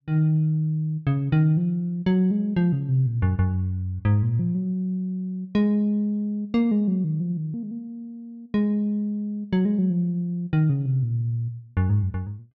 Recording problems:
none

